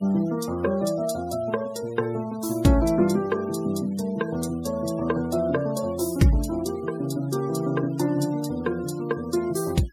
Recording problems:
denoising artefacts; signal-to-artefact ratio 21 dB

